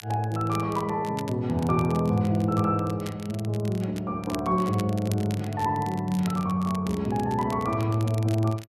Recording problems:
crackle; vinyl, SNR 19 dB

